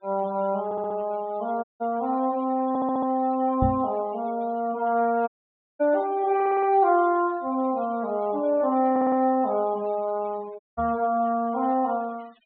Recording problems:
low-pass filter; nothing above 4 kHz
noise reduction artefacts; signal-to-artefact ratio 26 dB
stutter; 4 times, first at 0.5 s
dropout; at 1.5 s, at 5.5 s for 0.5 s and at 11 s
microphone thump; at 3.5 s and at 11 s; peak +3 dB vs average level

